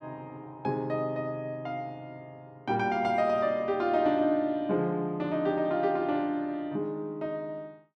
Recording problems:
none

